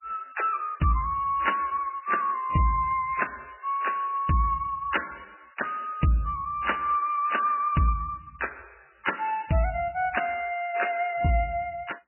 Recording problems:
lossy codec; MP3, log-spectral distance 5 dB, nothing above 2.9 kHz

